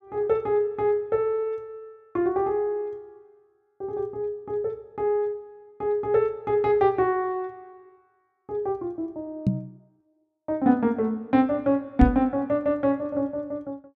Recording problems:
knock on the microphone; at 9.5 s and at 12 s; peak +8 dB vs average level

